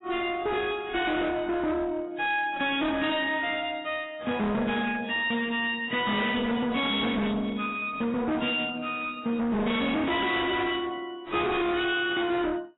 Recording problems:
codec artefacts; AAC, log-spectral distance 5 dB, nothing above 3.4 kHz
distortion; hard clipping, uneven, signal-to-distortion ratio 5 dB

